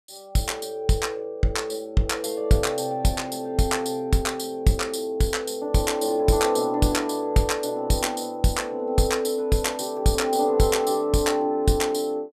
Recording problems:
none

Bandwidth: 14.5 kHz